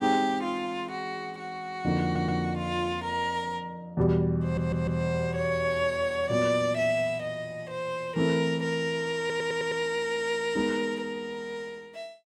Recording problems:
audio stuttering; at 2 s, at 4.5 s and at 9 s

